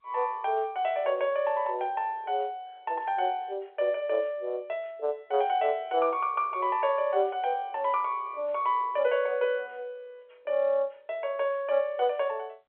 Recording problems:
phone line; 340 Hz to 3.4 kHz, G.711

